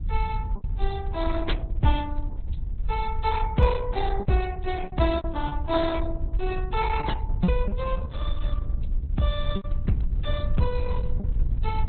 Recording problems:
lossy codec; MP3, then Opus, log-spectral distance 3 dB, nothing above 4 kHz
rumble; below 60 Hz, SNR 4 dB
wind on the microphone; below 92 Hz, SNR 8 dB
packet loss; 6% of the sound replaced, filled with repeated pitch periods

